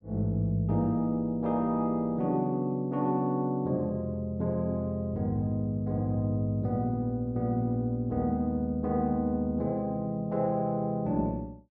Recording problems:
none

